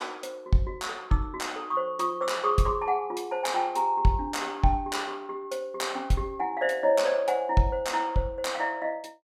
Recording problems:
none

